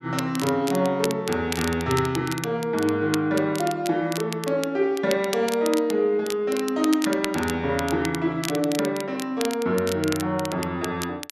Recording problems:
crackle; vinyl, SNR 11 dB

